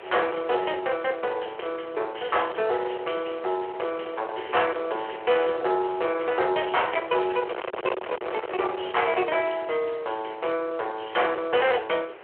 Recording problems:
phone line; 320 Hz to 3.3 kHz, Speex
distortion; soft clipping, signal-to-distortion ratio 5 dB
hiss; SNR 27 dB
wind on the microphone; below 1.3 kHz, SNR 12 dB

